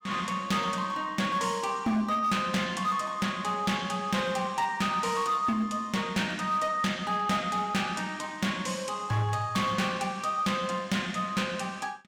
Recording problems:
distortion; hard clipping, signal-to-distortion ratio 12 dB

